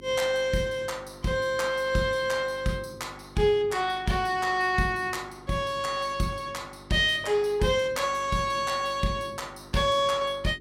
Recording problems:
hum; 50 Hz, harmonics up to 400 Hz, SNR 22 dB

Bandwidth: 16 kHz